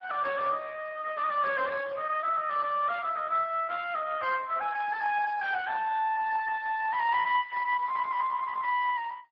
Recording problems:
lossy compression; MP3, then Speex, log-spectral distance 4 dB

